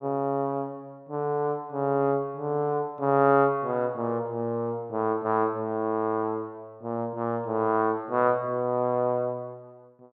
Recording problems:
none

